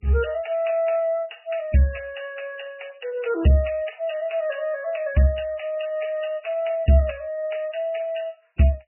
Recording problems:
lossy compression; MP3, log-spectral distance 7 dB, nothing above 2.9 kHz

